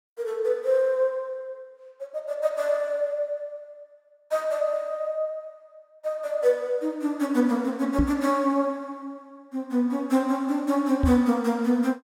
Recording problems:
microphone thump; at 8 s and at 11 s; peak +5 dB vs average level

